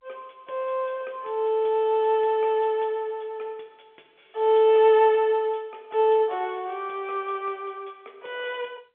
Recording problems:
telephone audio; 320 Hz to 4 kHz, G.711

